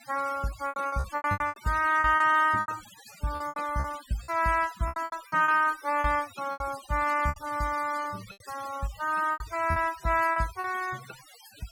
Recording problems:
denoising artefacts; signal-to-artefact ratio 18 dB
packet loss; 14% of the sound replaced, filled with repeated pitch periods

